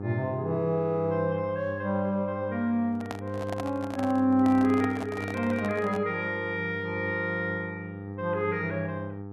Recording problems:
hum; 50 Hz, harmonics up to 1.3 kHz, SNR 10 dB
microphone handling noise; from 3 to 6 s; peak -3 dB vs average level

